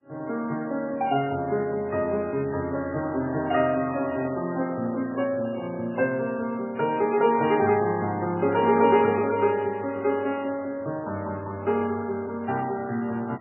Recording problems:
lossy compression; MP2, then MP3, log-spectral distance 3 dB, nothing above 2.4 kHz
handling noise; from 4 to 6 s; peak -12 dB vs average level

